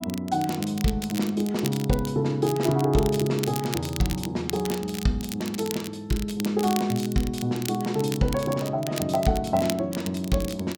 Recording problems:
crackle; vinyl, SNR 11 dB

